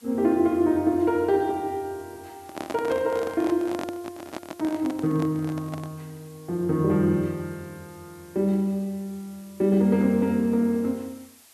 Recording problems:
hiss; slope 0 dB per octave, SNR 27 dB
handling noise; from 2.5 to 6 s; peak -4 dB vs average level

